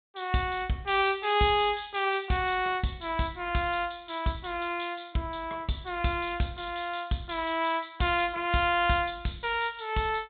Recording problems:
treble missing; nothing above 4 kHz

